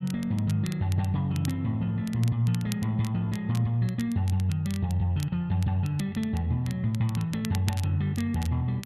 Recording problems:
crackle; vinyl, SNR 18 dB

